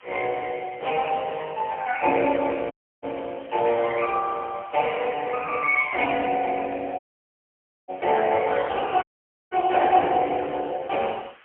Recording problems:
telephone audio; 300 Hz to 2.9 kHz, AMR-NB, then MP3
hiss; SNR 27 dB
audio cutting out; at 2.5 s, at 7 s for 1 s and at 9 s

